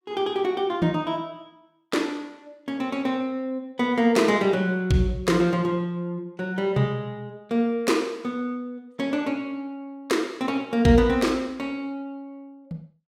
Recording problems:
none

